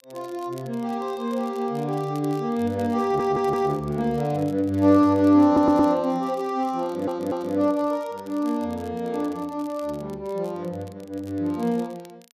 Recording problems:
crackle; vinyl, SNR 28 dB
stutter; at 3 s, at 5.5 s and at 7 s

